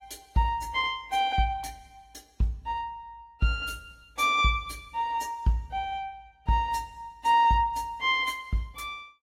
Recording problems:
lossy codec; AAC, log-spectral distance 2 dB, nothing above 15.1 kHz

